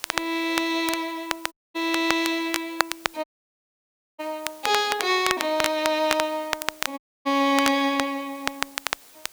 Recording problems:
background hiss; slope -1 dB per octave, SNR 23 dB
crackle; vinyl, SNR 5 dB
audio cutting out; at 1.5 s, at 3 s for 1 s and at 7 s

